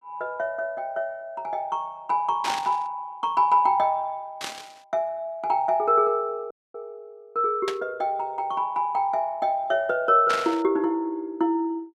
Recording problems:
static burst; 4 times, first at 2.5 s; peak -1 dB vs average level
dropout; at 6.5 s

